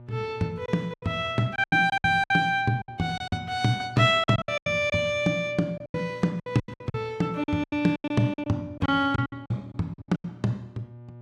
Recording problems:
electrical hum; 60 Hz, harmonics up to 1.2 kHz, SNR 21 dB
lost packets; 15% of the sound replaced, filled with silence

